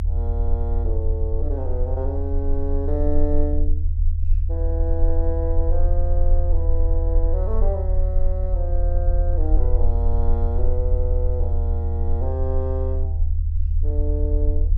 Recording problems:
rumble; below 78 Hz, SNR -7 dB

